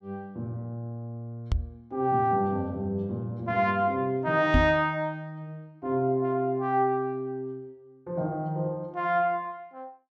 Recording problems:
knock on the microphone; at 1.5 s and at 4.5 s; peak +7 dB vs average level

